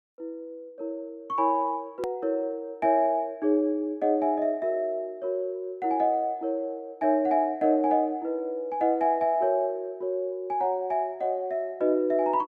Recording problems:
click at an edit; at 2 s

